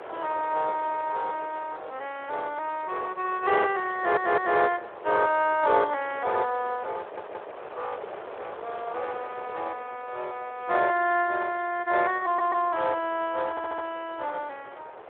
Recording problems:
phone line; 340 Hz to 3.4 kHz, Speex
wind noise; below 1 kHz, SNR 15 dB
audio stuttering; 4 times, first at 4 s

